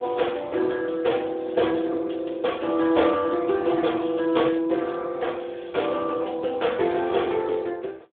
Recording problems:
telephone audio; 260 Hz to 3.6 kHz, Speex

